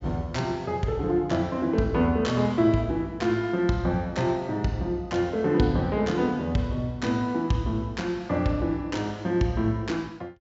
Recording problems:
treble cut off; nothing above 8 kHz

